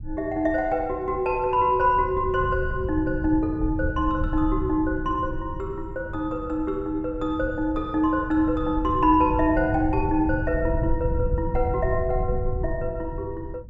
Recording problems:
rumble; below 100 Hz, SNR 8 dB

